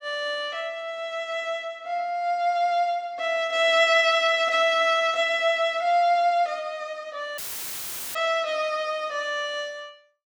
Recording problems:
dropout; at 7.5 s for 1 s; filled with static

